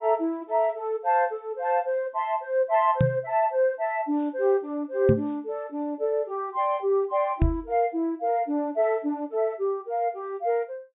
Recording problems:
treble missing; nothing above 4 kHz
microphone bump; at 3 s, at 5 s and at 7.5 s; peak +7 dB vs average level

